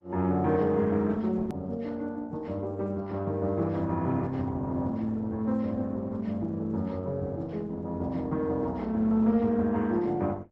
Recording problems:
lossy codec; Opus, log-spectral distance 2 dB, nothing above 13.1 kHz
hard cut with a click; at 1.5 s

